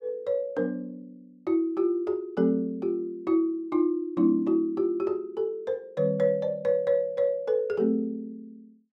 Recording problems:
none

